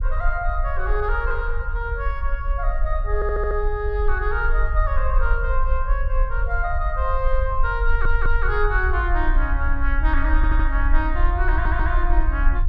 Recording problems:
low-frequency rumble; below 50 Hz, SNR -2 dB
audio stuttering; 4 times, first at 3 s

